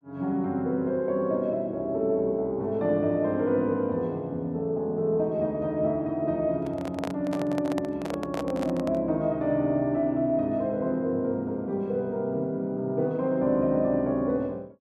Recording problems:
handling noise; from 6.5 to 9 s; peak -2 dB vs average level

